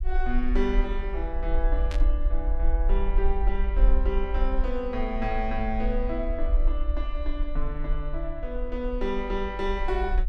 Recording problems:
low-frequency rumble; below 46 Hz, SNR -2 dB
static burst; at 2 s; peak -3 dB vs average level

